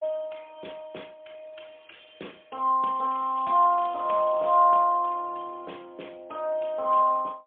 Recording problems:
phone line; 300 Hz to 3.4 kHz, AMR-NB, then MP3
crackling; from 3 to 4.5 s; loose cable, SNR 27 dB

